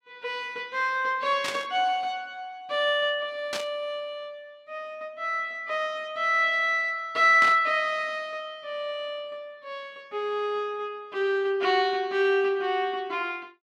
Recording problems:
burst of static; at 1.5 s, at 3.5 s and at 7.5 s; peak -2 dB vs average level

